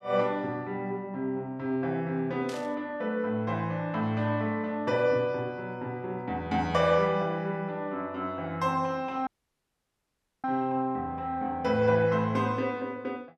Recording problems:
static burst; at 2.5 s; peak -9 dB vs average level
dropout; at 9.5 s for 1 s

